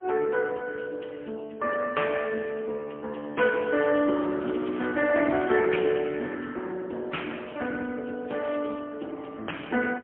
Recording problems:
phone line; 240 Hz to 3.3 kHz, AMR-NB, then MP3
crackle; from 3.5 to 5.5 s and at 8.5 s; loose cable, SNR 22 dB

